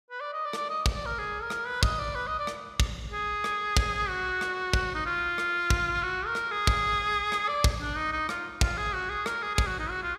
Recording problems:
none

